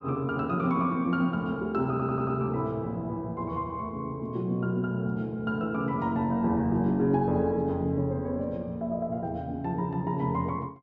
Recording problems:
low-pass filter; nothing above 7.9 kHz
audio stuttering; at 2 s

